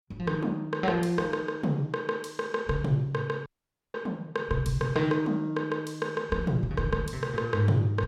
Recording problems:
audio cutting out; at 3.5 s

